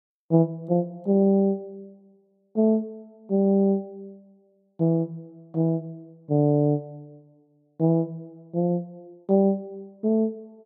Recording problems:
none

